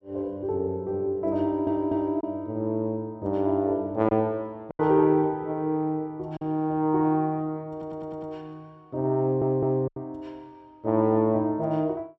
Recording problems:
lost packets; 2% of the sound replaced, filled with silence
stutter; at 1.5 s, at 7.5 s and at 9 s

